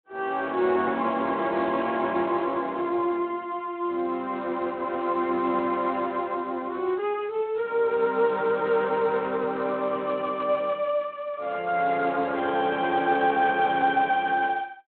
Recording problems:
telephone audio; 300 Hz to 3.9 kHz, Speex

